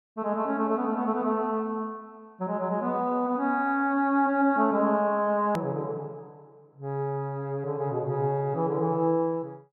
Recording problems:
hard cut with a click; at 5.5 s

